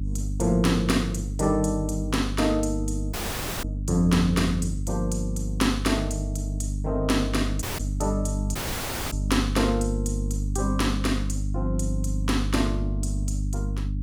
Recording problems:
hum; 50 Hz, harmonics up to 300 Hz, SNR 3 dB
audio cutting out; at 3 s for 0.5 s, at 7.5 s and at 8.5 s for 0.5 s

